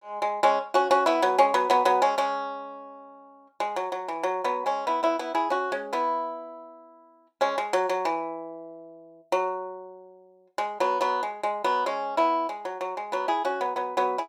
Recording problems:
none

